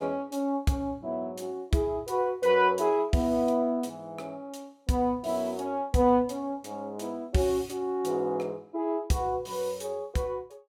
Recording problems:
none

